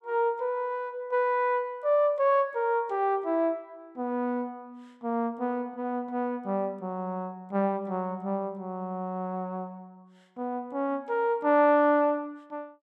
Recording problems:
none

